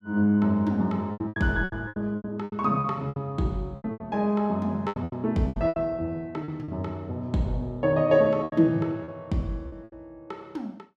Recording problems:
lost packets; 13% of the sound replaced, filled with repeated pitch periods

